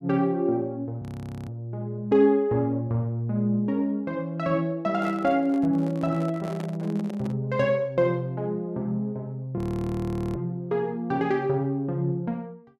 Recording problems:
frozen audio; at 1 s and at 9.5 s for 1 s
microphone handling noise; from 5 to 7.5 s; peak -7 dB vs average level

